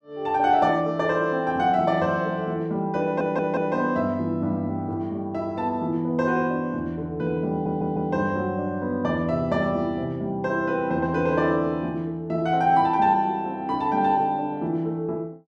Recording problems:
audio stuttering; at 3 s and at 7.5 s

